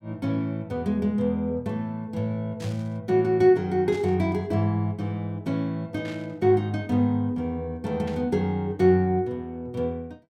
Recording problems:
burst of static; 4 times, first at 2.5 s; peak -13 dB vs average level

